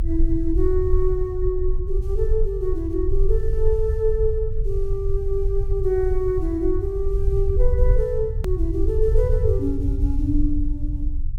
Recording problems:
rumble; below 60 Hz, strongest tone 22 Hz, SNR 0 dB
hard cut with a click; at 8.5 s

